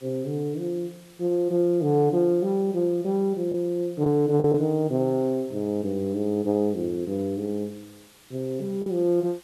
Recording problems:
background hiss; slope 0 dB per octave, SNR 27 dB
packet loss; 1.6% of the sound replaced, filled with the last packet

